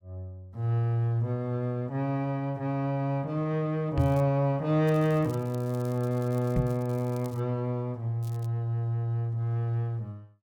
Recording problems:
crackle; at 4 s, from 5 to 7.5 s and at 8 s; loose cable, SNR 25 dB
microphone thump; at 4 s and at 6.5 s; peak +4 dB vs average level

